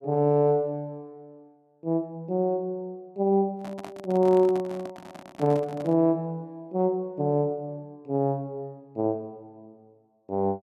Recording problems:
microphone handling noise; from 3.5 to 6 s; peak -9 dB vs average level

